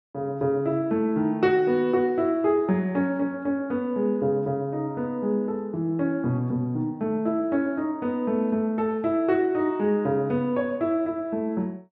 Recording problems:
none

